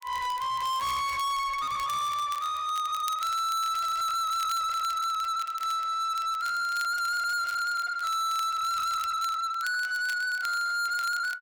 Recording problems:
distortion; soft clipping, signal-to-distortion ratio 6 dB
crackling; vinyl, SNR 19 dB

